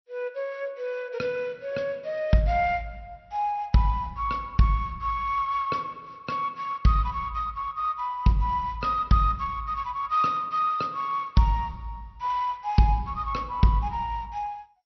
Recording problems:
lossy codec; MP2, log-spectral distance 2 dB, nothing above 5.8 kHz

